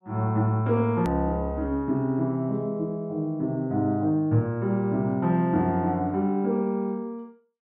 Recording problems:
click at an edit; at 1 s

